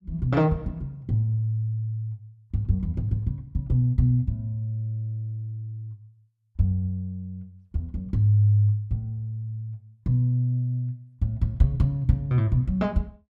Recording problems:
none

